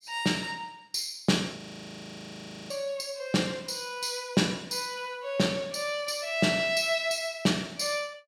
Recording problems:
audio freezing; at 1.5 s for 1 s

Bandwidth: 16.5 kHz